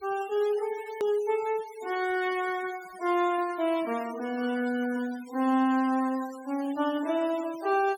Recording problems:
noise reduction artefacts; signal-to-artefact ratio 19 dB
edit click; at 1 s

